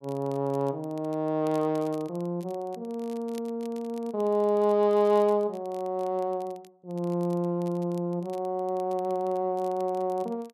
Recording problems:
crackling; vinyl, SNR 28 dB

